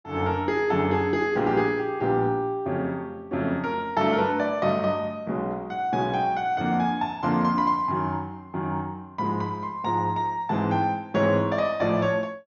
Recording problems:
low-pass filter; nothing above 6.8 kHz

